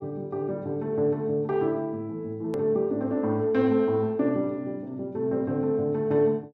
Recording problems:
edit click; at 2.5 s

